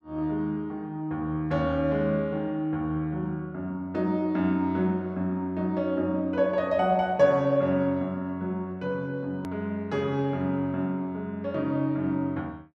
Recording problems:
edit click; at 9.5 s

